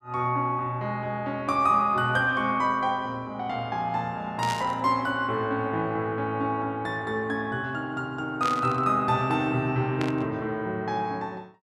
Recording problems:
burst of static; at 4.5 s, at 8.5 s and at 10 s; peak -3 dB vs average level

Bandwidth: 14.5 kHz